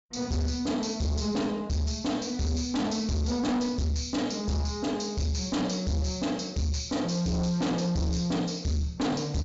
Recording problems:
treble cut off; nothing above 7.5 kHz
distortion; soft clipping, signal-to-distortion ratio 8 dB

